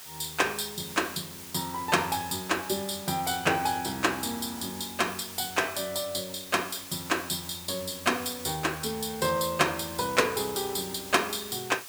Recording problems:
background hiss; SNR 12 dB

